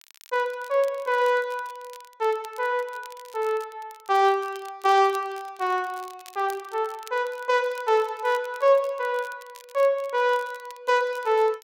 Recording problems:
crackle; vinyl, SNR 24 dB

